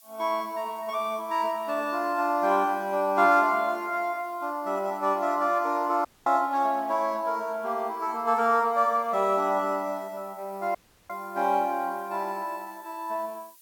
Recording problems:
background hiss; slope +5 dB per octave, SNR 27 dB
audio cutting out; at 6 s and at 11 s

